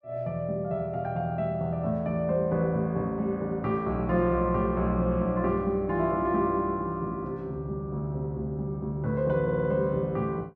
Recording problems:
audio stuttering; at 9.5 s

